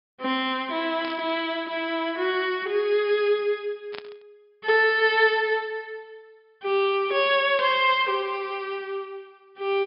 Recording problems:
low-pass filter; nothing above 5.2 kHz
burst of static; at 1 s, at 4 s and at 7.5 s; peak -10 dB vs average level

